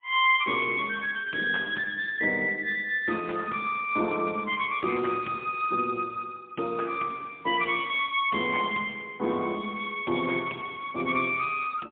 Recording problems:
telephone audio; 260 Hz to 3.5 kHz, AMR-NB, then MP3

